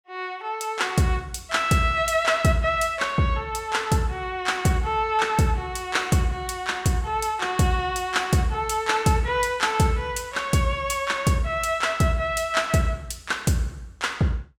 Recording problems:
none

